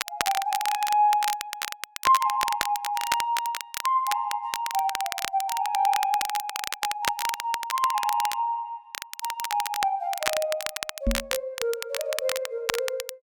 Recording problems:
crackle; vinyl, SNR 5 dB
microphone bump; at 11 s; peak +4 dB vs average level

